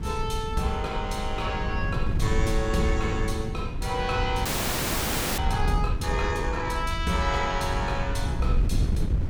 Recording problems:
wind on the microphone; below 110 Hz, SNR 1 dB
frozen audio; at 4.5 s for 1 s

